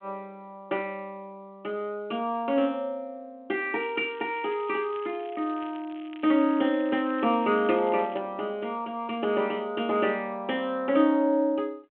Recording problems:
telephone audio; 240 Hz to 3.3 kHz, G.726
crackle; from 4 to 8 s; loose cable, SNR 24 dB

